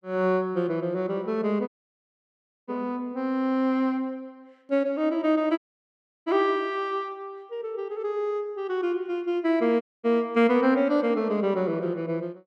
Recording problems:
dropout; at 1.5 s for 1 s, at 5.5 s for 0.5 s and at 10 s

